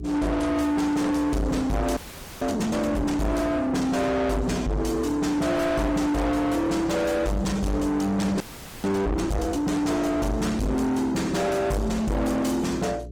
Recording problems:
lossy compression; Opus, log-spectral distance 3 dB, nothing above 18.9 kHz
distorted audio; soft clipping, signal-to-distortion ratio 6 dB
hum; 60 Hz, harmonics up to 600 Hz, SNR 15 dB
frozen audio; at 2 s and at 8.5 s

